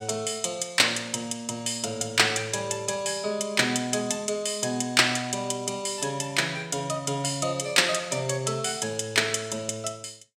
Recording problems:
none

